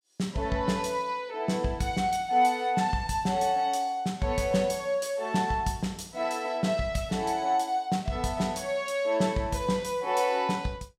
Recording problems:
none

